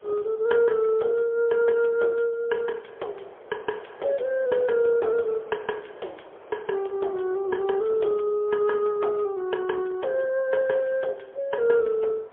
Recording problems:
phone line; 320 Hz to 3.7 kHz, AMR-NB, then MP3
wind noise; below 900 Hz, SNR 22 dB

